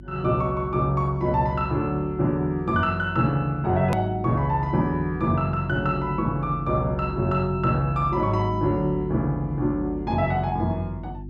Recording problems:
hum; 50 Hz, harmonics up to 350 Hz, SNR 14 dB
edit click; at 4 s

